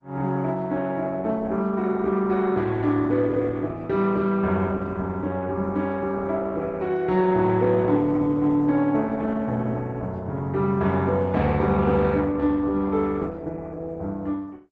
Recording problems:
codec artefacts; Opus, log-spectral distance 3 dB

